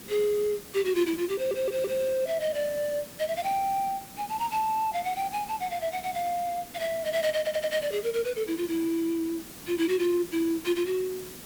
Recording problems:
background hiss; SNR 14 dB
audio stuttering; at 1.5 s and at 7.5 s

